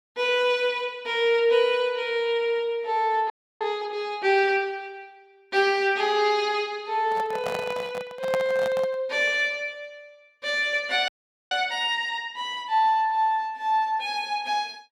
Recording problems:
audio freezing; at 3.5 s and at 11 s
microphone handling noise; from 7 to 9 s; peak -1 dB vs average level

